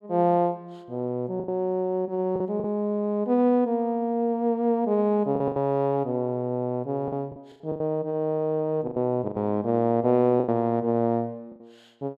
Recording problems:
lost packets; 7% of the sound replaced, filled with the last packet

